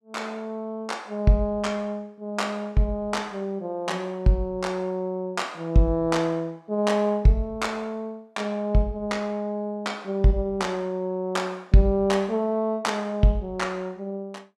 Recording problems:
none

